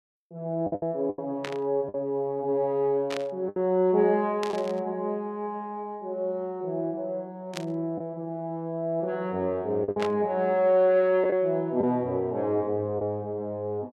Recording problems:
lost packets; 4% of the sound replaced, filled with the last packet
burst of static; 5 times, first at 1.5 s; peak -3 dB vs average level

